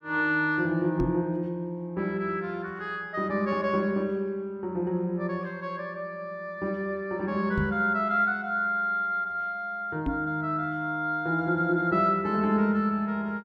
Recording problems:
microphone bump; at 1 s, at 7.5 s and at 10 s; peak +2 dB vs average level

